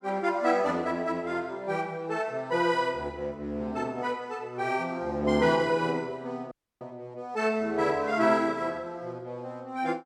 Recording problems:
audio cutting out; at 6.5 s

